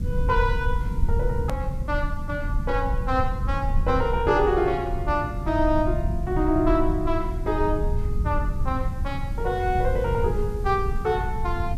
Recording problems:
hiss; SNR 26 dB
rumble; below 90 Hz, SNR 2 dB
edit click; at 1.5 s

